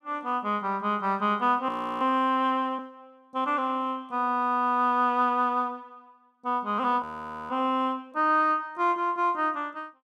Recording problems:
audio freezing; at 1.5 s and at 7 s

